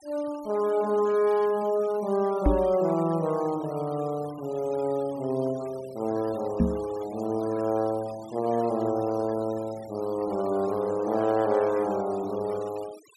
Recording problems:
noise reduction artefacts; signal-to-artefact ratio 21 dB
microphone bump; at 2.5 s and at 6.5 s; peak +7 dB vs average level

